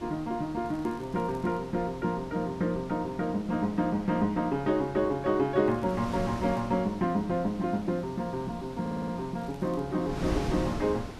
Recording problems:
hiss; SNR 25 dB
wind noise; below 530 Hz, SNR 12 dB
crackle; at 0.5 s, at 5.5 s and at 9.5 s; loose cable, SNR 30 dB
stutter; at 9 s

